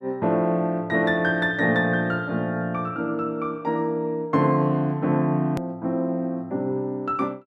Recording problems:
edit click; at 5.5 s

